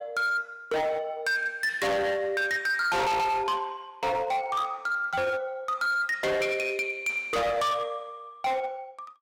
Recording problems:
distorted audio; hard clipping, signal-to-distortion ratio 6 dB

